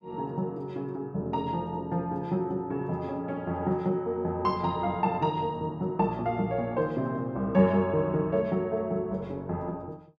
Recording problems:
none

